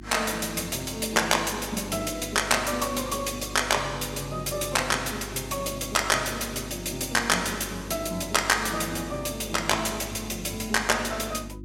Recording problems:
hum; 50 Hz, harmonics up to 350 Hz, SNR 15 dB

